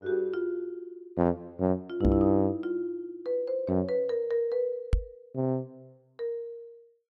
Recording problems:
microphone thump; at 2 s and at 5 s; peak +7 dB vs average level

